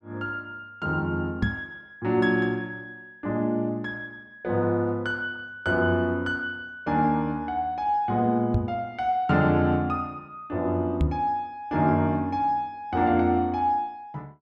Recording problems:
microphone thump; at 1.5 s, at 8.5 s and at 11 s; peak +6 dB vs average level

